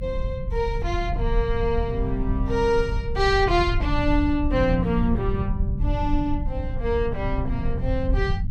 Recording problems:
low-frequency rumble; below 90 Hz, SNR 3 dB

